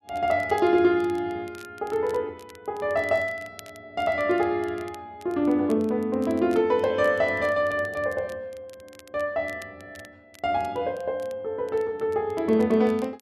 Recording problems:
crackle; vinyl, SNR 27 dB

